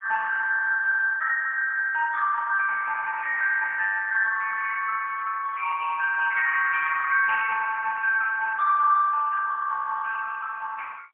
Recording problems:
telephone audio; 950 Hz to 2.2 kHz, AMR-NB, then MP3

